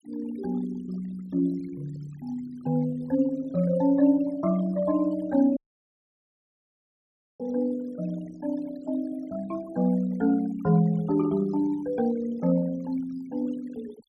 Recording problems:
denoising artefacts; signal-to-artefact ratio 22 dB
audio cutting out; at 5.5 s for 2 s

